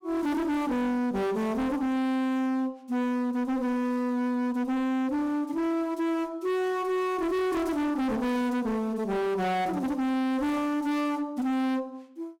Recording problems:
distortion; hard clipping, signal-to-distortion ratio 7 dB

